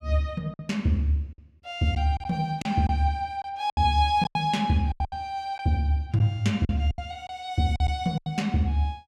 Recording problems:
lost packets; 9% of the sound replaced, filled with silence

